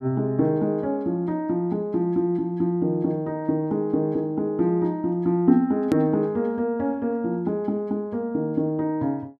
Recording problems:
click at an edit; at 6 s

